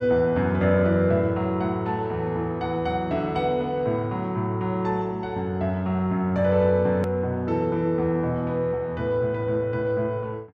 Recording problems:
edit click; at 7 s

